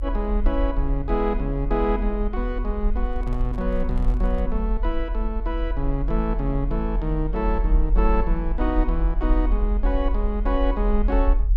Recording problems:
rumble; below 42 Hz, strongest tone 40 Hz, SNR -1 dB
handling noise; from 3 to 4.5 s; peak -11 dB vs average level

